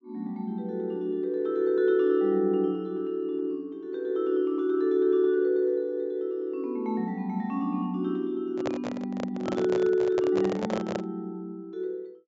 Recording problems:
treble missing; nothing above 8 kHz
microphone handling noise; from 8.5 to 11 s; peak 0 dB vs average level

